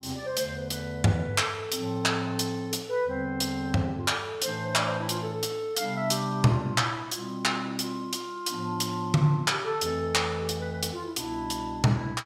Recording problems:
none

